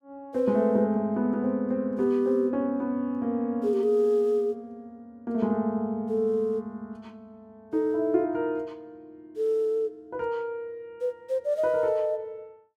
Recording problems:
none

